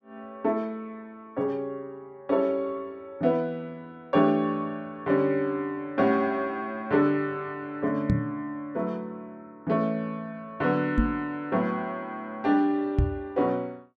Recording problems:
microphone thump; at 8 s, at 11 s and at 13 s; peak +7 dB vs average level

